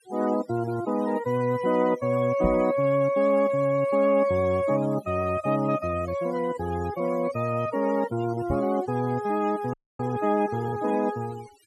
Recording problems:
denoising artefacts; signal-to-artefact ratio 19 dB
knock on the microphone; at 2.5 s and at 8.5 s; peak 0 dB vs average level
audio freezing; at 9.5 s

